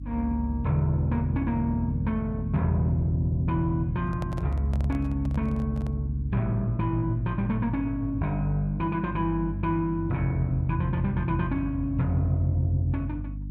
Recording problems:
electrical hum; 50 Hz, harmonics up to 300 Hz, SNR 9 dB
handling noise; from 4 to 6 s; peak -8 dB vs average level

